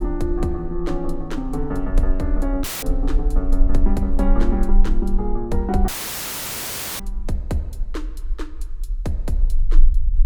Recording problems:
rumble; below 36 Hz, strongest tone 22 Hz, SNR -1 dB
audio cutting out; at 2.5 s and at 6 s for 1 s

